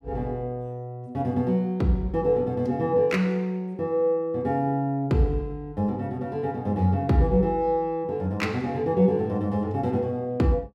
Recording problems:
none

